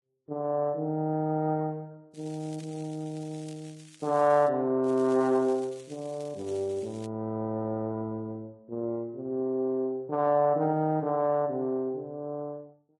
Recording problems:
codec artefacts; Vorbis, log-spectral distance 2 dB
crackle; from 2 to 4.5 s and from 5 to 7 s; loose cable, SNR 24 dB

